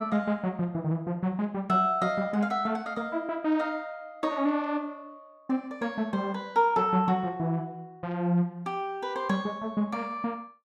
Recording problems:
none

